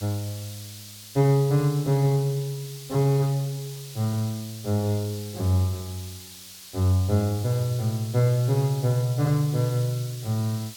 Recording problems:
hiss; slope +4 dB per octave, SNR 16 dB

